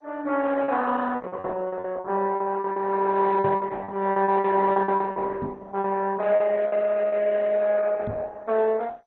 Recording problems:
lossy codec; Opus, then MP2, log-spectral distance 4 dB
packet loss; 11% of the sound replaced, filled with repeated pitch periods
microphone thump; at 3.5 s, at 5.5 s and at 8 s; peak -2 dB vs average level

